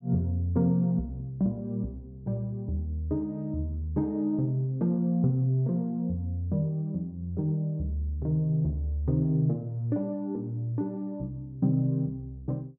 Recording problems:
none

